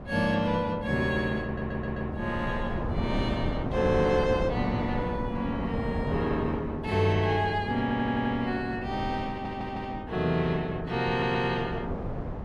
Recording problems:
wind noise; below 470 Hz, SNR 7 dB
stutter; 4 times, first at 1.5 s

